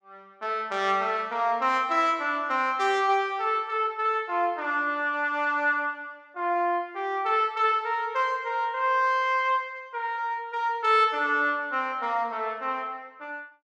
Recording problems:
none

